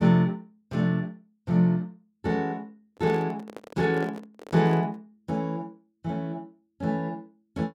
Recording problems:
microphone handling noise; from 3 to 5 s; peak -6 dB vs average level

